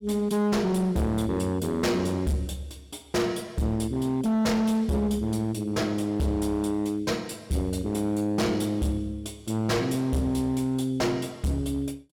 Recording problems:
distortion; hard clipping, signal-to-distortion ratio 8 dB

